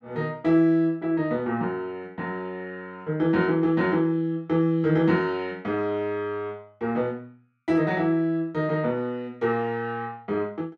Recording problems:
none

